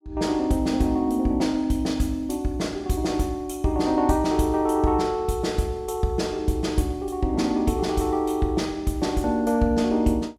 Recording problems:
none

